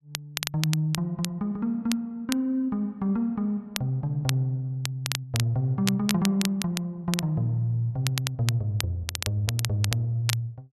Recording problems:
crackling; vinyl, SNR 7 dB

